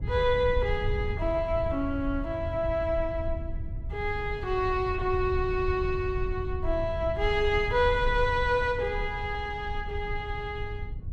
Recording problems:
rumble; below 86 Hz, SNR 7 dB

